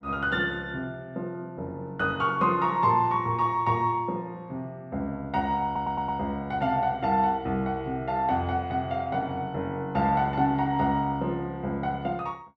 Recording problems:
audio stuttering; at 5.5 s

